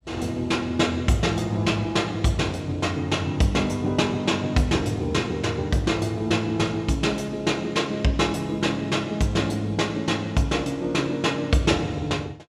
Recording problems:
none

